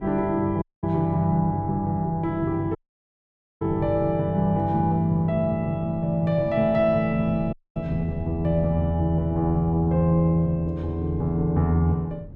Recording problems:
wind noise; below 180 Hz, SNR 17 dB
audio cutting out; at 0.5 s, at 3 s for 1 s and at 7.5 s

